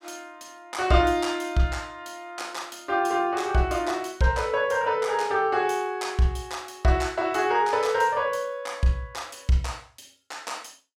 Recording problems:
none

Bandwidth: 16 kHz